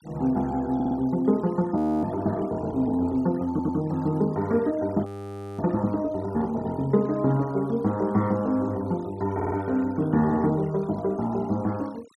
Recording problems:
noise reduction artefacts; signal-to-artefact ratio 25 dB
audio stuttering; at 1 s, at 3.5 s and at 9.5 s
audio freezing; at 2 s and at 5 s for 0.5 s

